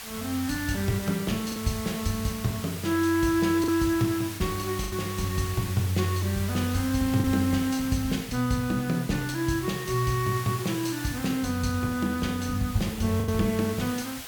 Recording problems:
hiss; SNR 11 dB
packet loss; 2% of the sound replaced, filled with the last packet

